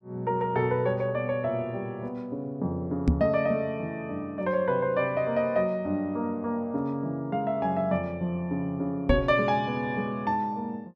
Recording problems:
microphone bump; at 3 s and at 9 s; peak +9 dB vs average level

